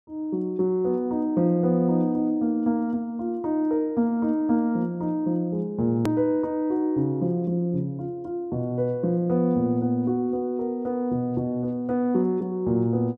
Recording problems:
hard cut with a click; at 6 s

